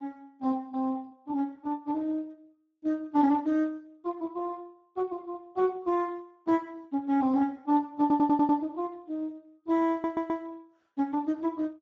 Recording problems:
lossy codec; Speex, log-spectral distance 2 dB
stutter; at 8 s and at 10 s

